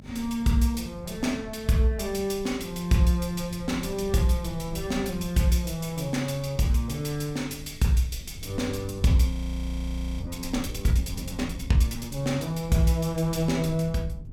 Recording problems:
mains hum; 50 Hz, harmonics up to 850 Hz, SNR 25 dB
rumble; below 110 Hz, SNR 15 dB
frozen audio; at 9.5 s for 1 s

